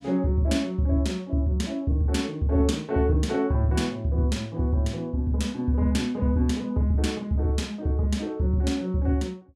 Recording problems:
none

